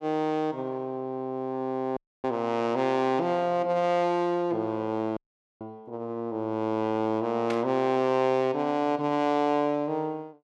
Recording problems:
dropout; at 2 s and at 5 s
burst of static; at 7.5 s; peak -5 dB vs average level

